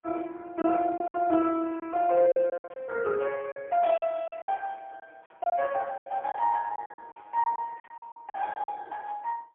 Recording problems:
phone line; 130 Hz to 3.3 kHz, AMR-NB, then MP3
packet loss; 11% of the sound replaced, filled with silence

